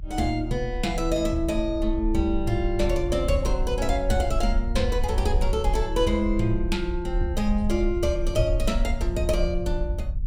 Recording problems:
rumble; below 58 Hz, SNR 4 dB

